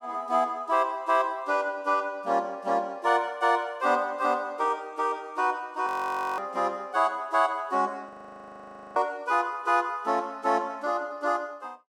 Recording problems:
frozen audio; at 6 s for 0.5 s and at 8 s for 1 s

